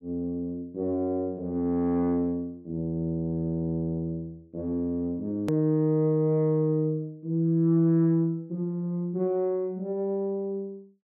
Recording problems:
edit click; at 5.5 s

